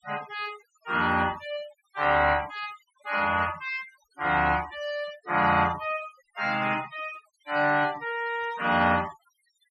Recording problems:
denoising artefacts; signal-to-artefact ratio 16 dB

